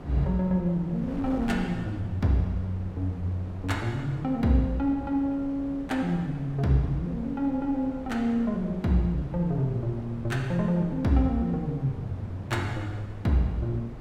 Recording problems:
wind on the microphone; below 380 Hz, SNR 14 dB

